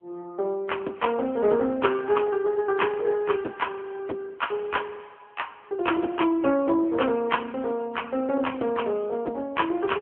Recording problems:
telephone audio; 240 Hz to 3.3 kHz, AMR-NB

